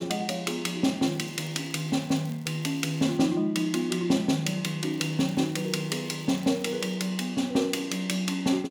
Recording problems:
crackle; from 1 to 3 s and from 5 to 7 s; loose cable, SNR 25 dB

